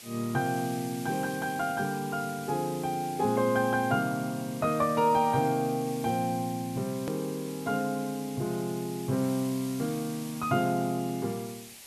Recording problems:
hiss; SNR 15 dB
hard cut with a click; at 7 s

